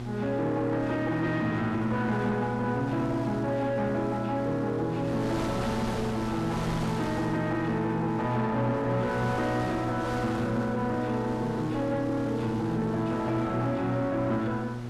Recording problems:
distortion; soft clipping, signal-to-distortion ratio 11 dB
mains hum; 60 Hz, harmonics up to 840 Hz, SNR 7 dB
wind on the microphone; below 1.5 kHz, SNR 11 dB

